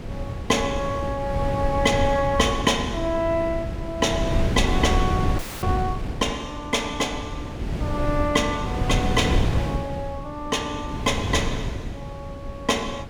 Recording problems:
wind noise; below 240 Hz, SNR 3 dB
frozen audio; at 5.5 s

